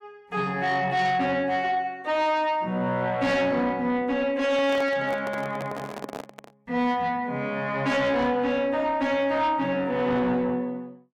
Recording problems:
distortion; soft clipping, signal-to-distortion ratio 12 dB
handling noise; from 4.5 to 6.5 s; peak -5 dB vs average level

